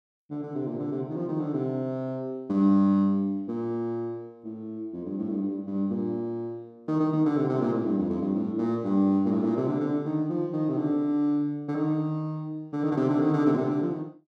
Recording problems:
none

